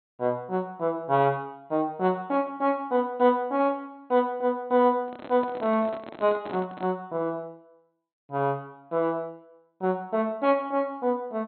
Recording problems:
treble missing; nothing above 4.1 kHz
microphone handling noise; from 5 to 7 s; peak -8 dB vs average level

